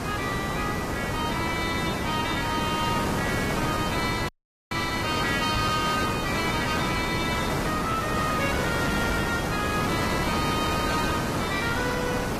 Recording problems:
lossy codec; AAC, log-spectral distance 7 dB, nothing above 15.1 kHz
distorted audio; hard clipping, uneven, signal-to-distortion ratio 10 dB
hiss; slope -6 dB per octave, SNR 0 dB
dropout; at 4.5 s
microphone thump; at 5.5 s and at 9 s; peak +2 dB vs average level

